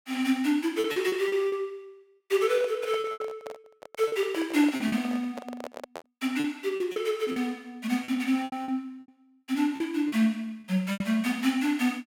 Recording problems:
packet loss; 9% of the sound replaced, filled with repeated pitch periods
handling noise; from 2.5 to 6 s; peak -7 dB vs average level

